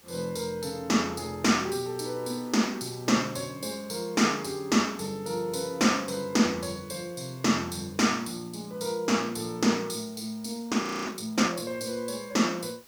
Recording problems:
hiss; slope -1 dB per octave, SNR 25 dB
audio freezing; at 11 s

